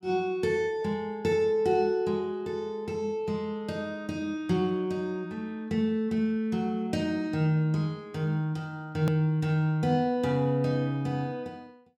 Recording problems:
hard cut with a click; at 9 s

